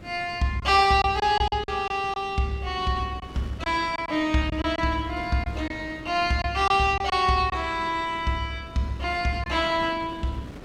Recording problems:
wind noise; below 470 Hz, SNR 18 dB
lost packets; 5% of the sound replaced, filled with silence

